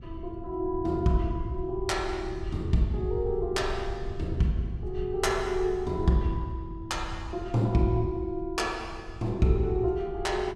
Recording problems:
low-frequency rumble; below 88 Hz, SNR 11 dB

